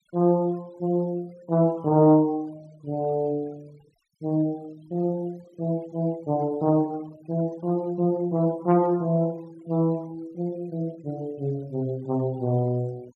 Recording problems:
denoising artefacts; signal-to-artefact ratio 28 dB

